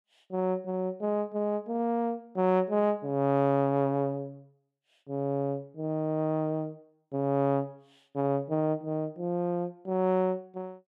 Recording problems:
none

